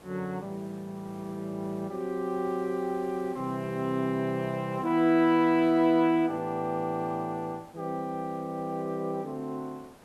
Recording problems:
background hiss; slope -6 dB per octave, SNR 24 dB

